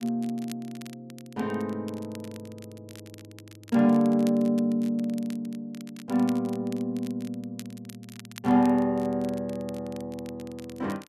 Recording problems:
crackle; vinyl, SNR 22 dB

